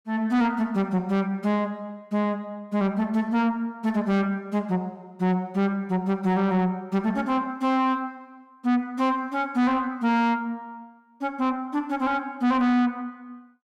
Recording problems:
distortion; soft clipping, signal-to-distortion ratio 11 dB

